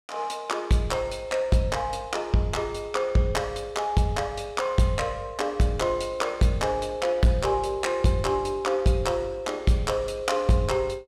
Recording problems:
distortion; hard clipping, signal-to-distortion ratio 11 dB

